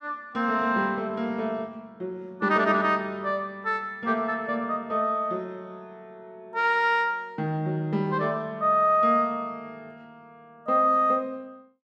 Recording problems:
none

